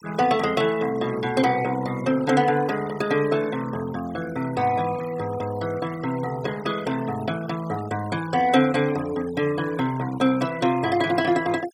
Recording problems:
noise reduction artefacts; signal-to-artefact ratio 16 dB

